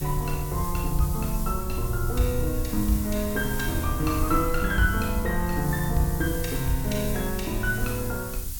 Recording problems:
background hiss; slope +3 dB per octave, SNR 9 dB
rumble; below 76 Hz, SNR 6 dB

